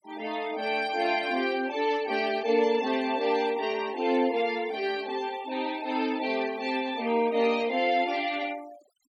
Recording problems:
noise reduction artefacts; signal-to-artefact ratio 19 dB

